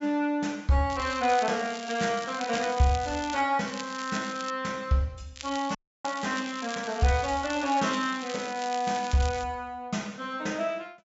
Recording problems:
treble cut off; nothing above 8 kHz
crackling; from 1 to 3.5 s, at 3.5 s and from 5.5 to 9.5 s; loose cable, SNR 12 dB
dropout; at 6 s

